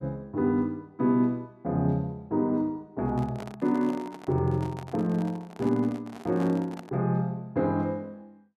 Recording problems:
handling noise; from 3 to 7 s; peak -10 dB vs average level

